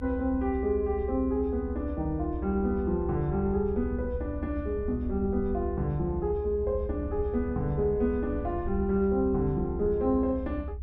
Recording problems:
rumble; below 76 Hz, strongest tone 62 Hz, SNR 7 dB

